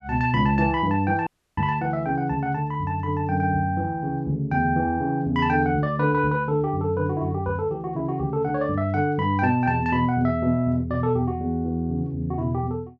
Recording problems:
dropout; at 1.5 s

